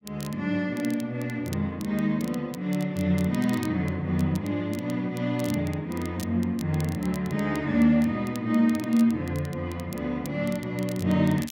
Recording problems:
crackle; vinyl, SNR 20 dB

